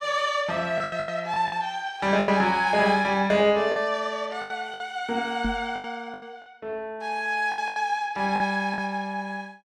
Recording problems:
lost packets; 9% of the sound replaced, filled with the last packet
microphone bump; at 5.5 s; peak -1 dB vs average level

